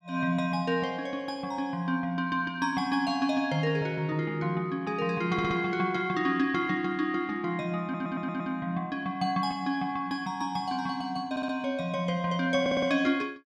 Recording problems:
stutter; 4 times, first at 5.5 s

